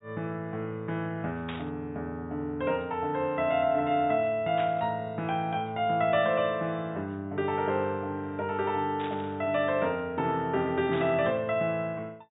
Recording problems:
treble cut off; nothing above 4 kHz
static burst; 4 times, first at 1.5 s; peak -7 dB vs average level

